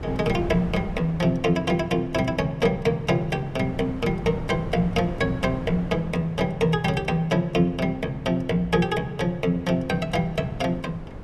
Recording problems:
wind noise; below 340 Hz, SNR 13 dB

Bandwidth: 13.5 kHz